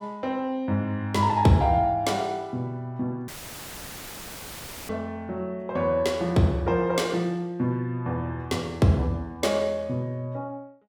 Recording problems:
dropout; at 3.5 s for 1.5 s; filled with static

